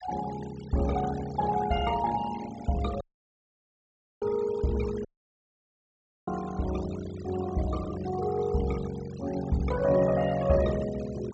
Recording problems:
low-pass filter; nothing above 8 kHz
denoising artefacts; signal-to-artefact ratio 15 dB
audio cutting out; at 3 s for 1 s and at 5 s for 1 s

